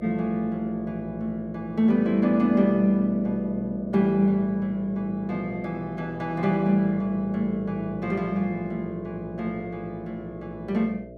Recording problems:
hum; 60 Hz, harmonics up to 660 Hz, SNR 16 dB

